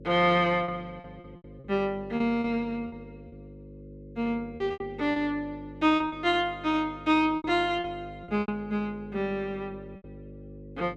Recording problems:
hum; 50 Hz, harmonics up to 550 Hz, SNR 18 dB
lost packets; 9% of the sound replaced, filled with repeated pitch periods

